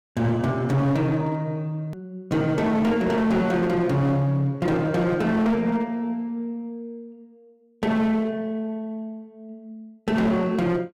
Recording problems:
distortion; hard clipping, signal-to-distortion ratio 10 dB
click at an edit; at 2 s

